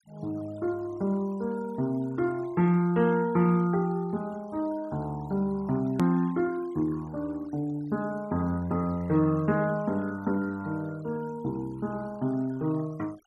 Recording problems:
denoising artefacts; signal-to-artefact ratio 24 dB
click at an edit; at 6 s

